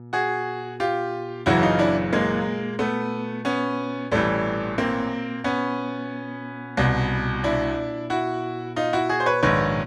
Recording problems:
mains hum; 60 Hz, harmonics up to 960 Hz, SNR 16 dB

